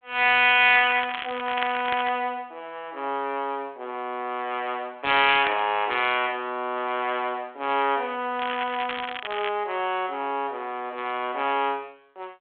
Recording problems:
phone line; 220 Hz to 3.4 kHz, G.726
crackle; from 0.5 to 2 s, at 5.5 s and from 8.5 to 9.5 s; loose cable, SNR 11 dB

